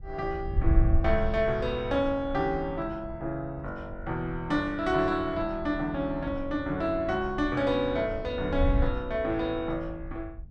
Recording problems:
wind on the microphone; below 74 Hz, SNR 7 dB

